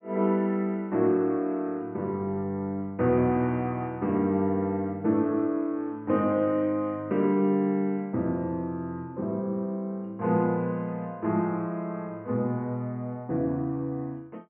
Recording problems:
treble missing; nothing above 3.2 kHz

